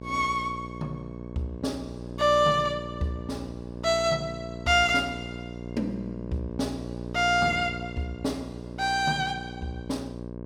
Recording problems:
electrical hum; 60 Hz, harmonics up to 1.1 kHz, SNR 10 dB

